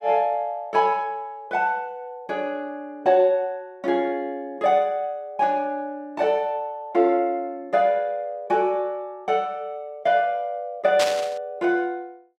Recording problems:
static burst; at 11 s; peak +2 dB vs average level

